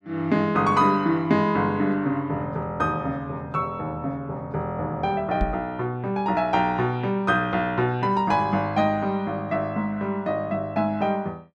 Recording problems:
microphone thump; at 5.5 s; peak +1 dB vs average level

